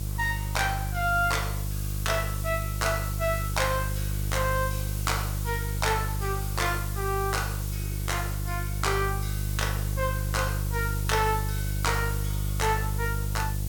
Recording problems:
electrical hum; 50 Hz, harmonics up to 500 Hz, SNR 1 dB
hiss; slope +3 dB per octave, SNR 8 dB

